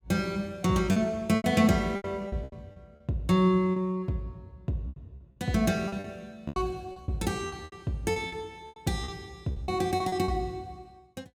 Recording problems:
lost packets; 12% of the sound replaced, filled with repeated pitch periods

